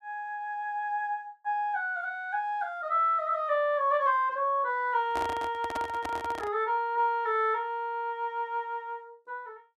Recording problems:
handling noise; from 5 to 6.5 s; peak -3 dB vs average level

